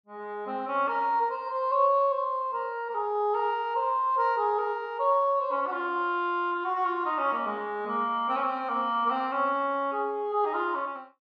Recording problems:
none

